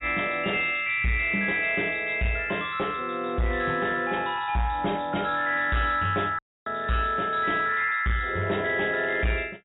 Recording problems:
low-pass filter; nothing above 4 kHz
distortion; soft clipping, signal-to-distortion ratio 11 dB
dropout; at 6.5 s

